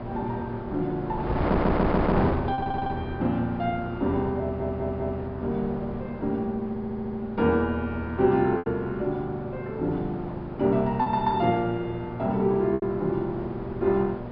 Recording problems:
low-pass filter; nothing above 5 kHz
hum; 60 Hz, harmonics up to 1.2 kHz, SNR 14 dB
wind noise; below 790 Hz, SNR 8 dB
packet loss; 1.9% of the sound replaced, filled with repeated pitch periods
stutter; 4 times, first at 1.5 s

